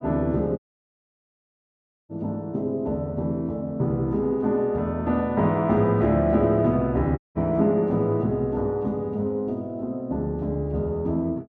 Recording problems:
audio cutting out; at 0.5 s for 1.5 s and at 7 s

